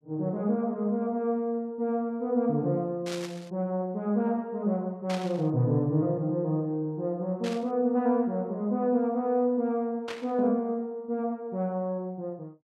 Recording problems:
static burst; 4 times, first at 3 s; peak -6 dB vs average level

